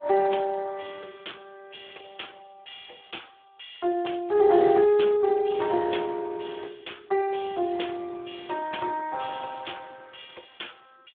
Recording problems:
phone line; 300 Hz to 3.6 kHz, Speex

